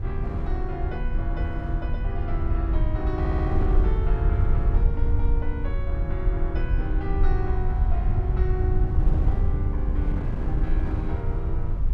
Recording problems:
rumble; below 72 Hz, SNR -8 dB
wind on the microphone; below 200 Hz, SNR 1 dB
audio stuttering; at 3 s

